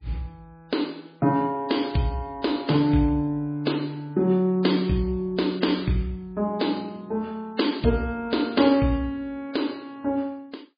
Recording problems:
lossy codec; MP3, log-spectral distance 3 dB, nothing above 4.8 kHz

